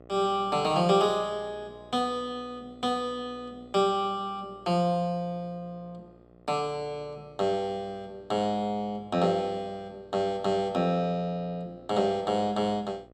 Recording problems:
hum; 60 Hz, harmonics up to 1.4 kHz, SNR 25 dB

